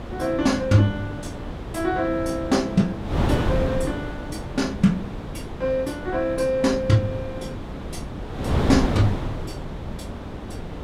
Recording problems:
wind on the microphone; below 440 Hz, SNR 6 dB

